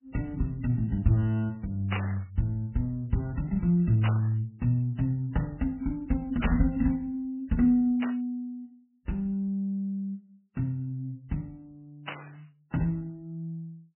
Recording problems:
lossy compression; MP3, log-spectral distance 2 dB, nothing above 2.7 kHz
static burst; 5 times, first at 2 s; peak +2 dB vs average level

